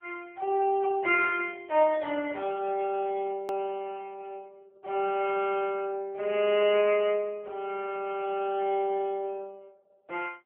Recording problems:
telephone audio; 240 Hz to 3.3 kHz, AMR-NB
edit click; at 3.5 s

